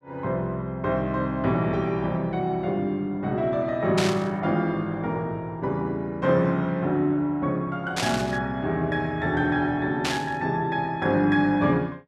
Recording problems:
static burst; at 4 s, at 8 s and at 10 s; peak +2 dB vs average level

